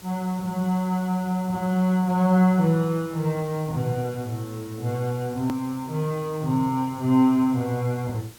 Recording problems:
hiss; slope -2 dB per octave, SNR 22 dB
edit click; at 5.5 s

